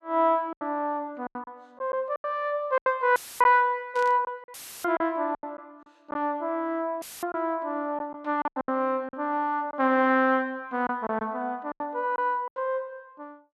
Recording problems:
packet loss; 11% of the sound replaced, filled with silence
audio cutting out; at 3 s, at 4.5 s and at 7 s; filled with static
static burst; at 4 s; peak -13 dB vs average level

